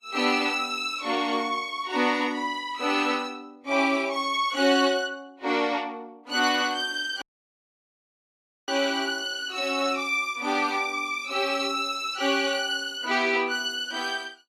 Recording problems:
lossy codec; Vorbis, log-spectral distance 2 dB, nothing above 12 kHz
dropout; at 7 s for 1.5 s

